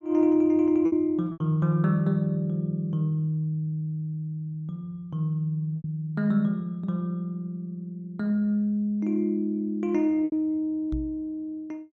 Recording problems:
packet loss; 3% of the sound replaced, filled with repeated pitch periods
microphone thump; at 11 s; peak -2 dB vs average level

